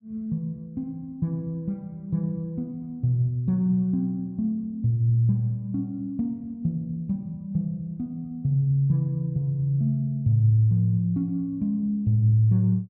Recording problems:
none

